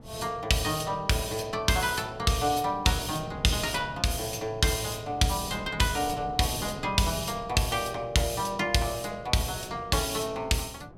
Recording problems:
wind noise; below 330 Hz, SNR 18 dB

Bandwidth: 16 kHz